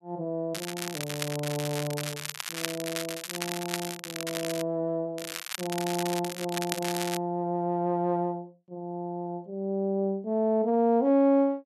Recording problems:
crackle; from 0.5 to 4.5 s and from 5 to 7 s; loose cable, SNR 6 dB

